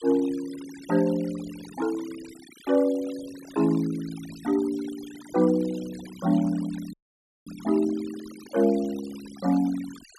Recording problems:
noise reduction artefacts; signal-to-artefact ratio 19 dB
dropout; at 7 s for 0.5 s

